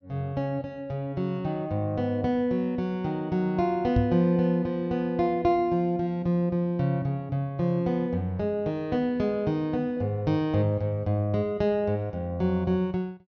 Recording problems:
treble cut off; nothing above 6.5 kHz
knock on the microphone; at 4 s; peak +5 dB vs average level

